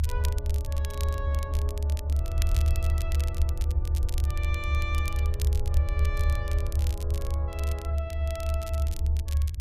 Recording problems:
low-frequency rumble; below 76 Hz, strongest tone 74 Hz, SNR -11 dB
wind noise; below 360 Hz, SNR 18 dB
crackling; vinyl, SNR 6 dB

